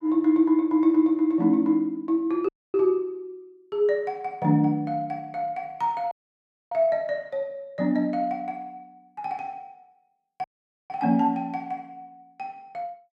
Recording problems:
audio cutting out; at 2.5 s, at 6 s for 0.5 s and at 10 s

